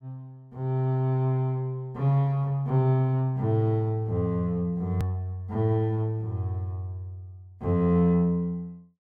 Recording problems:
hard cut with a click; at 5 s

